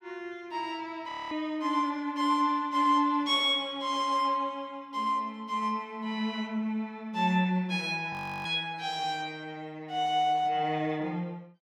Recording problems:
audio freezing; at 1 s and at 8 s

